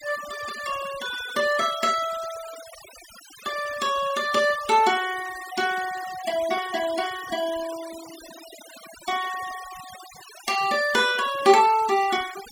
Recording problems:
denoising artefacts; signal-to-artefact ratio 15 dB

